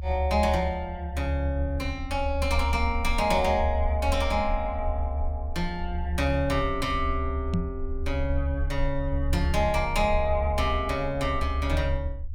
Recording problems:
low-frequency rumble; below 72 Hz, strongest tone 70 Hz, SNR 3 dB
microphone bump; at 7.5 s; peak +6 dB vs average level

